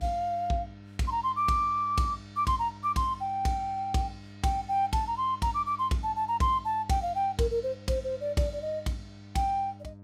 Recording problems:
hum; 50 Hz, harmonics up to 1 kHz, SNR 19 dB

